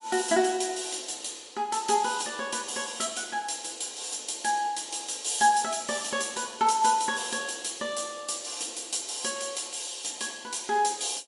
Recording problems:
codec artefacts; MP3, log-spectral distance 11 dB, nothing above 11 kHz

